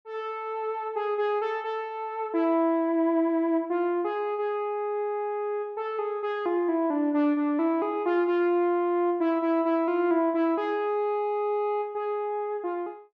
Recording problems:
none

